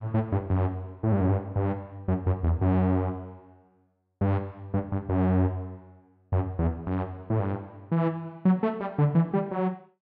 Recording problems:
none

